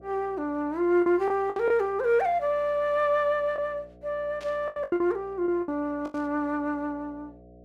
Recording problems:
hum; 60 Hz, harmonics up to 720 Hz, SNR 25 dB
lost packets; 7% of the sound replaced, filled with the last packet
burst of static; at 1.5 s, at 4.5 s and at 6 s; peak -14 dB vs average level

